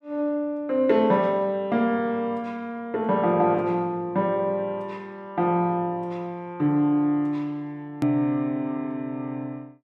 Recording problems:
edit click; at 8 s

